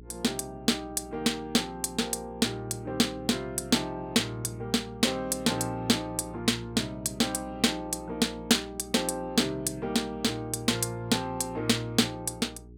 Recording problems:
electrical hum; 60 Hz, harmonics up to 420 Hz, SNR 21 dB

